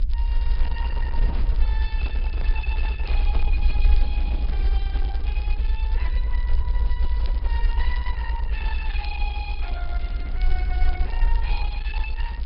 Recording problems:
low-pass filter; nothing above 4.4 kHz
lossy codec; Opus, log-spectral distance 2 dB
rumble; below 56 Hz, SNR -12 dB
crackle; vinyl, SNR 13 dB
microphone handling noise; from 2 to 4 s; peak +3 dB vs average level

